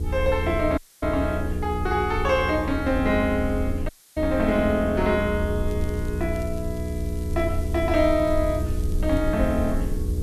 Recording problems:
hum; 60 Hz, harmonics up to 480 Hz, SNR 8 dB
hiss; slope +1 dB per octave, SNR 24 dB
rumble; below 80 Hz, SNR 6 dB
audio cutting out; at 1 s and at 4 s
crackle; from 5.5 to 9 s; loose cable, SNR 27 dB

